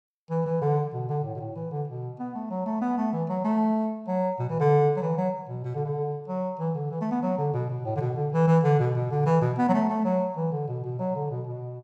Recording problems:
none

